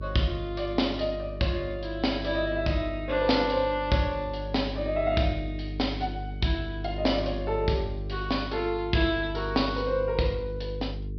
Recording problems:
treble cut off; nothing above 5.5 kHz
hum; 50 Hz, harmonics up to 450 Hz, SNR 9 dB

